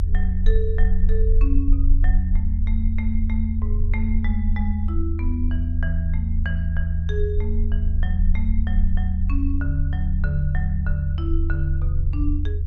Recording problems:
electrical hum; 50 Hz, harmonics up to 400 Hz, SNR 24 dB
low-frequency rumble; below 80 Hz, strongest tone 28 Hz, SNR -7 dB

